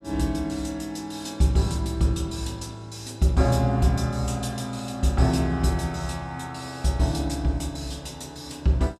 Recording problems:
none

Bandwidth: 13.5 kHz